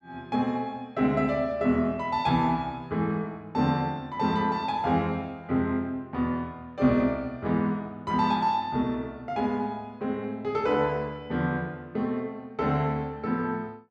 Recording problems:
none

